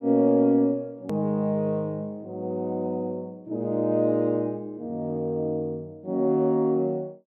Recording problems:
hard cut with a click; at 1 s

